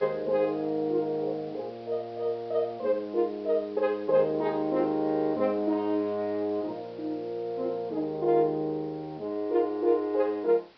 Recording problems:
treble missing; nothing above 5.5 kHz
background hiss; SNR 27 dB

